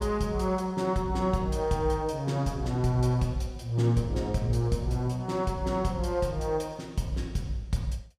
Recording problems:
none

